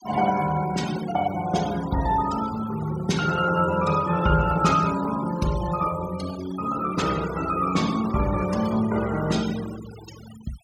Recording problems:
denoising artefacts; signal-to-artefact ratio 15 dB

